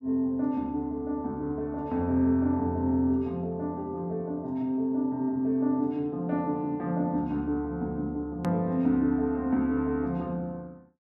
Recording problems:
click at an edit; at 8.5 s

